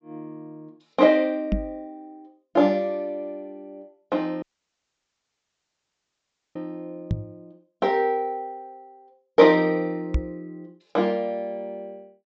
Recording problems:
treble missing; nothing above 8 kHz
microphone thump; at 1.5 s, at 7 s and at 10 s; peak +3 dB vs average level
audio cutting out; at 4.5 s for 2 s

